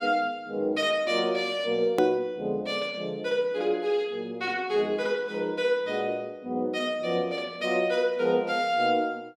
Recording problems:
edit click; at 2 s

